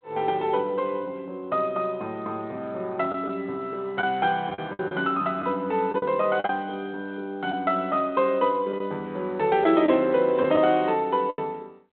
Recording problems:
phone line; 170 Hz to 3.6 kHz, G.726
packet loss; 4% of the sound replaced, filled with the last packet

